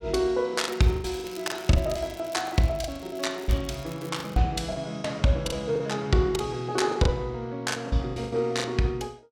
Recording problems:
packet loss; 12% of the sound replaced, filled with the last packet
crackling; from 0.5 to 4.5 s; loose cable, SNR 20 dB

